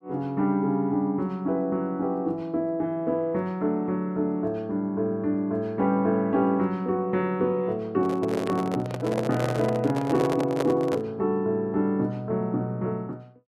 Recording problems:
handling noise; from 8 to 11 s; peak +1 dB vs average level

